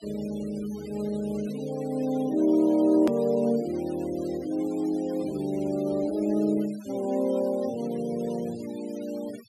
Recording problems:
noise reduction artefacts; signal-to-artefact ratio 21 dB
hard cut with a click; at 3 s

